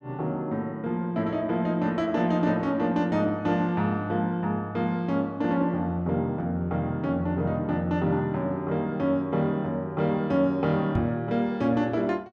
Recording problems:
knock on the microphone; at 11 s; peak +1 dB vs average level

